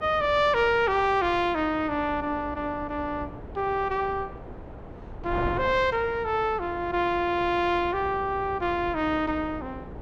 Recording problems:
hum; 60 Hz, harmonics up to 480 Hz, SNR 22 dB
wind noise; below 580 Hz, SNR 15 dB

